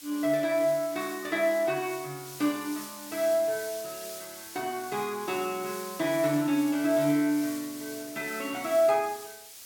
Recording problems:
hiss; slope +2 dB per octave, SNR 13 dB

